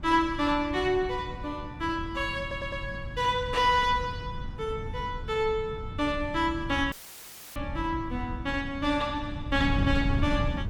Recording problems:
wind noise; below 140 Hz, SNR 8 dB
stutter; at 2.5 s
dropout; at 7 s for 0.5 s; filled with static

